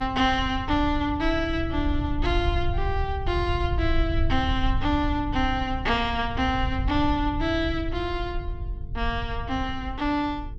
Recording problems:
hum; 50 Hz, harmonics up to 450 Hz, SNR 18 dB
low-frequency rumble; below 80 Hz, SNR 5 dB

